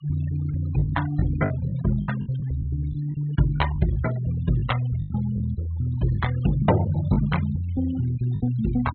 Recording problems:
low-pass filter; nothing above 4.1 kHz
noise reduction artefacts; signal-to-artefact ratio 16 dB
packet loss; 7% of the sound replaced, filled with the last packet

